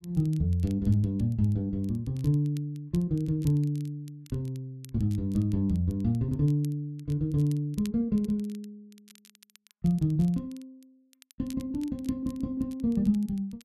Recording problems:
crackle; vinyl, SNR 27 dB

